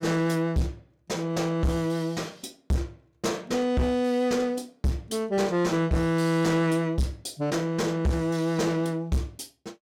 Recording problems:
distortion; soft clipping, signal-to-distortion ratio 8 dB

